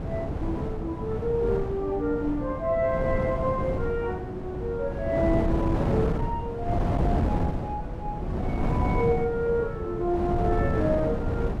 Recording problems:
wind on the microphone; below 340 Hz, SNR 1 dB

